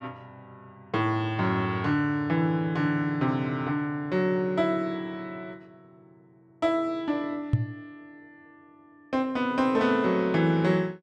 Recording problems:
microphone thump; at 7.5 s; peak +7 dB vs average level

